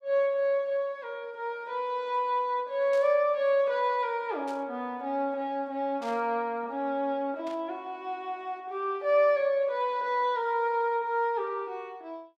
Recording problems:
burst of static; 4 times, first at 3 s; peak -14 dB vs average level

